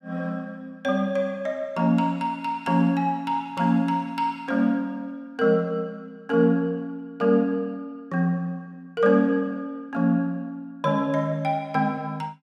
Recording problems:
none

